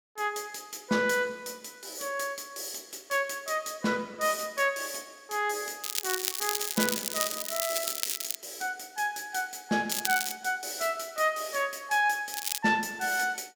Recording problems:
crackle; from 6 to 8.5 s, at 10 s and at 12 s; loose cable, SNR 1 dB

